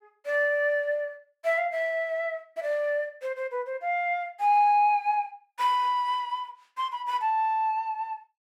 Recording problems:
none

